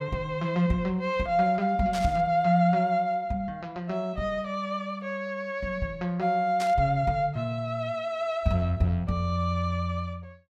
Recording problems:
burst of static; at 2 s and at 6.5 s; peak -6 dB vs average level

